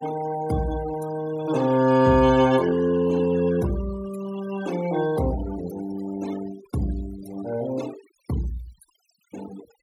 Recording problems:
noise reduction artefacts; signal-to-artefact ratio 17 dB

